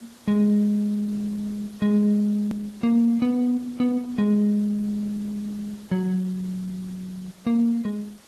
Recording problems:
lossy compression; AAC, then Opus, log-spectral distance 3 dB, nothing above 13.1 kHz
background hiss; slope -2 dB per octave, SNR 27 dB
click at an edit; at 2.5 s

